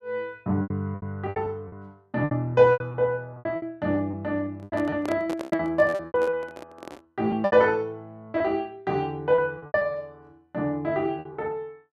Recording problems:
lost packets; 14% of the sound replaced, filled with repeated pitch periods
handling noise; from 4.5 to 7 s; peak -5 dB vs average level

